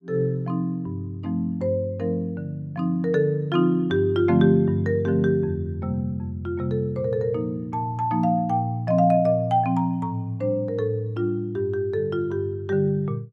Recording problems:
none

